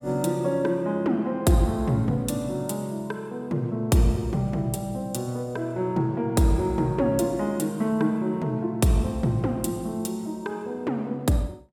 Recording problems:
none

